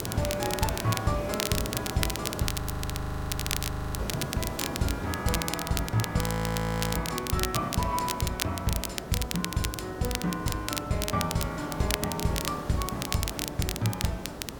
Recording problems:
hum; 60 Hz, harmonics up to 540 Hz, SNR 19 dB
hiss; SNR 8 dB
crackling; vinyl, SNR 3 dB
frozen audio; at 2.5 s for 1.5 s and at 6 s for 0.5 s

